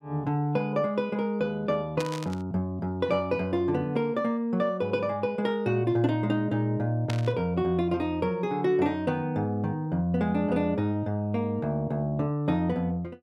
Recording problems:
static burst; at 2 s and at 7 s; peak -4 dB vs average level

